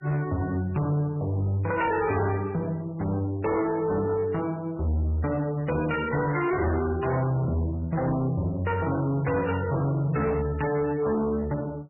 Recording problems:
lossy codec; MP3, log-spectral distance 3 dB, nothing above 2.4 kHz
distortion; hard clipping, signal-to-distortion ratio 10 dB

